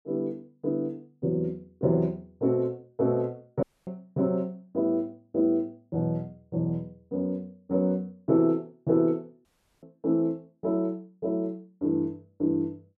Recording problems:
dropout; at 3.5 s and at 9.5 s

